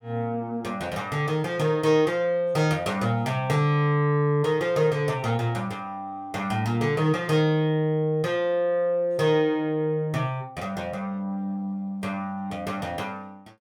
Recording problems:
none

